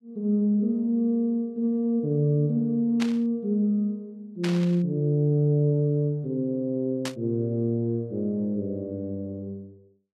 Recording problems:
static burst; at 3 s, at 4.5 s and at 7 s; peak -3 dB vs average level

